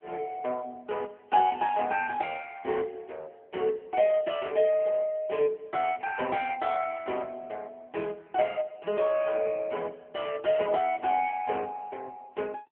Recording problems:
phone line; 280 Hz to 3.3 kHz, AMR-NB

